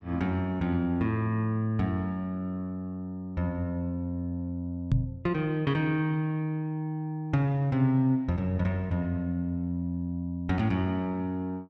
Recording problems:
microphone thump; at 5 s; peak +7 dB vs average level

